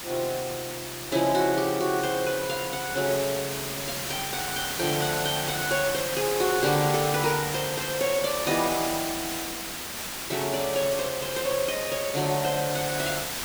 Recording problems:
background hiss; slope -1 dB per octave, SNR 4 dB

